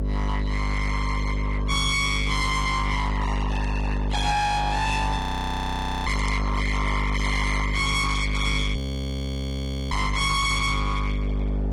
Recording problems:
lossy codec; AAC, log-spectral distance 3 dB, nothing above 20.1 kHz
distorted audio; hard clipping, signal-to-distortion ratio 7 dB
hum; 50 Hz, harmonics up to 2.1 kHz, SNR 2 dB
frozen audio; at 5 s for 1 s and at 9 s for 1 s

